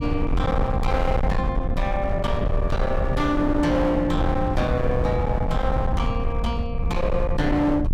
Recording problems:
distortion; hard clipping, uneven, signal-to-distortion ratio 8 dB
rumble; below 150 Hz, SNR 2 dB

